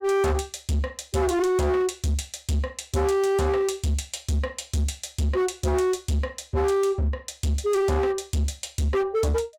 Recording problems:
distorted audio; hard clipping, signal-to-distortion ratio 7 dB

